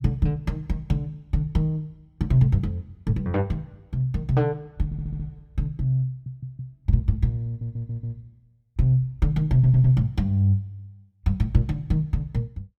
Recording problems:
audio stuttering; 4 times, first at 5 s

